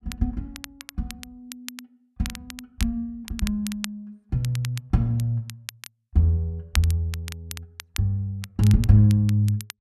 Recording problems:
crackling; vinyl, SNR 16 dB

